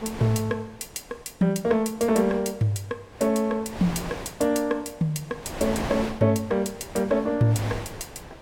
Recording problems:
wind noise; below 1.4 kHz, SNR 12 dB

